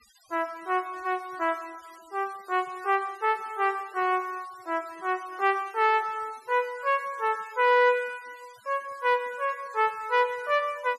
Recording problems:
denoising artefacts; signal-to-artefact ratio 24 dB

